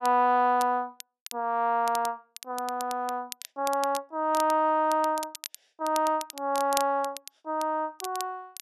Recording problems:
crackle; vinyl, SNR 14 dB

